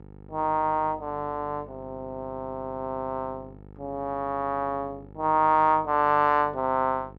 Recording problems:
hum; 50 Hz, harmonics up to 1.4 kHz, SNR 21 dB

